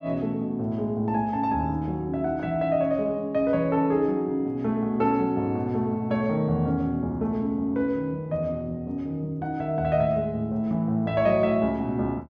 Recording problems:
none

